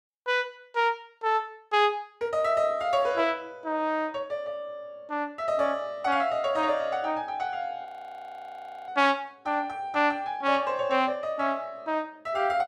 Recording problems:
audio freezing; at 8 s for 1 s

